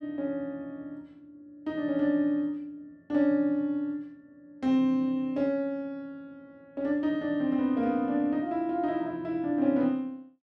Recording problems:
none

